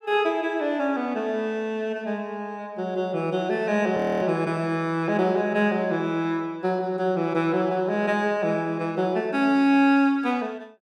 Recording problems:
frozen audio; at 4 s

